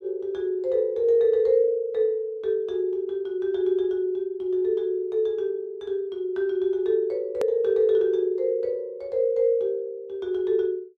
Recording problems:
click at an edit; at 7.5 s

